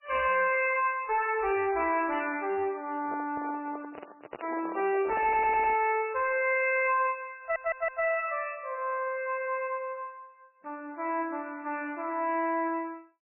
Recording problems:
lossy codec; MP3, log-spectral distance 4 dB, nothing above 2.6 kHz
distortion; hard clipping, signal-to-distortion ratio 9 dB
handling noise; from 3 to 6 s; peak -5 dB vs average level
stutter; at 5 s and at 7.5 s

